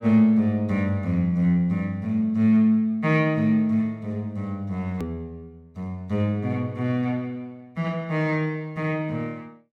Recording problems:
edit click; at 5 s

